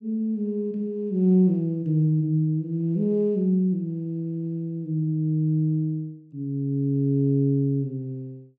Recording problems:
none

